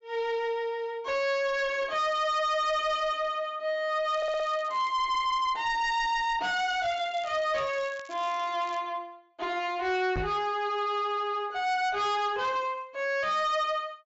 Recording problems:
treble missing; nothing above 8 kHz
distortion; soft clipping, signal-to-distortion ratio 11 dB
crackle; at 2 s, at 4 s and from 6.5 to 9 s; loose cable, SNR 24 dB
audio stuttering; at 4 s
knock on the microphone; at 10 s; peak -2 dB vs average level

